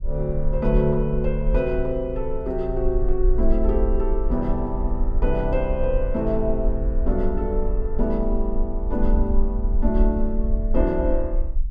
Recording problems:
rumble; below 46 Hz, SNR 1 dB

